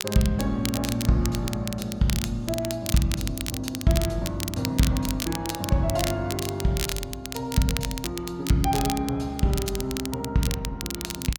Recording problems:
crackling; vinyl, SNR 7 dB

